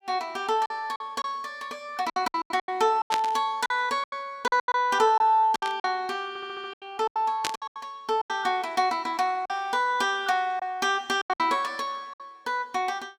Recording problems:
lost packets; 12% of the sound replaced, filled with silence
burst of static; at 3 s, at 5.5 s and at 7.5 s; peak +3 dB vs average level
audio stuttering; at 6.5 s

